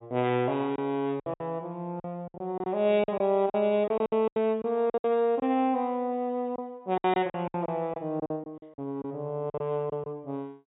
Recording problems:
treble missing; nothing above 4 kHz
lost packets; 12% of the sound replaced, filled with silence

